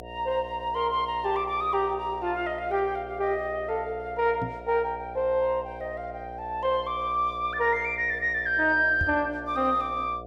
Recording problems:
mains hum; 60 Hz, harmonics up to 720 Hz, SNR 15 dB
microphone thump; at 4.5 s and at 9 s; peak -1 dB vs average level

